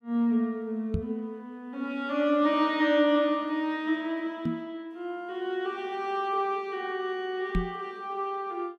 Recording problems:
knock on the microphone; at 1 s, at 4.5 s and at 7.5 s; peak +4 dB vs average level

